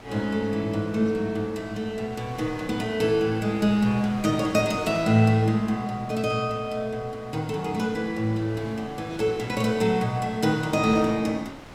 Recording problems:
wind on the microphone; below 1.7 kHz, SNR 18 dB

